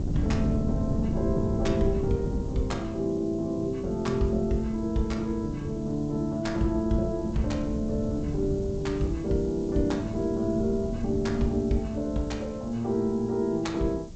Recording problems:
lossy compression; G.722, log-spectral distance 4 dB, nothing above 7.6 kHz
background hiss; slope +2 dB per octave, SNR 27 dB
wind on the microphone; below 210 Hz, SNR 6 dB

